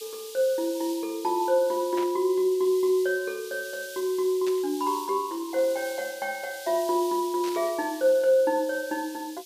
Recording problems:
background hiss; SNR 15 dB
static burst; at 2 s, at 4.5 s and at 7.5 s; peak -9 dB vs average level

